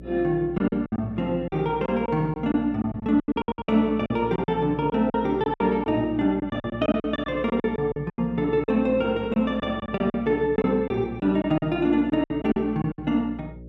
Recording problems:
hum; 60 Hz, harmonics up to 600 Hz, SNR 18 dB
packet loss; 14% of the sound replaced, filled with silence

